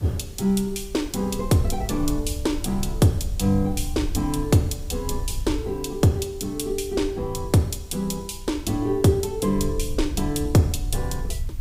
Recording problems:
hiss; slope -2 dB per octave, SNR 27 dB
rumble; below 74 Hz, SNR 10 dB

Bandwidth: 15.5 kHz